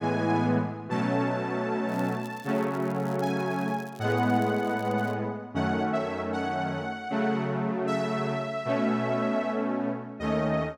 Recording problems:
crackle; from 2 to 5 s; loose cable, SNR 25 dB

